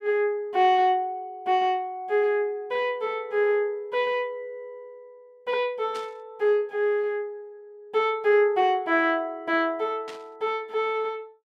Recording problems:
burst of static; at 6 s and at 10 s; peak -12 dB vs average level

